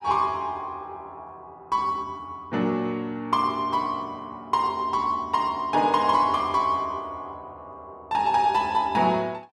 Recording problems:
none

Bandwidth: 14.5 kHz